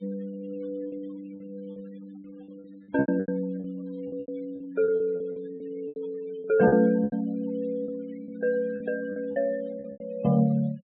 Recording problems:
treble cut off; nothing above 4 kHz
denoising artefacts; signal-to-artefact ratio 23 dB
lost packets; 13% of the sound replaced, filled with repeated pitch periods

